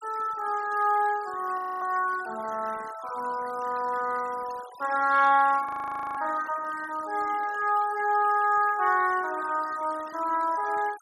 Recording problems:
denoising artefacts; signal-to-artefact ratio 20 dB
frozen audio; at 1.5 s and at 5.5 s for 0.5 s

